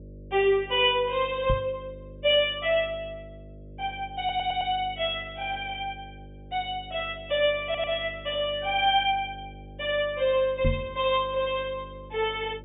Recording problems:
low-pass filter; nothing above 3.7 kHz
hum; 50 Hz, harmonics up to 600 Hz, SNR 19 dB
microphone bump; at 1.5 s and at 11 s; peak +4 dB vs average level
stutter; at 4 s and at 7.5 s

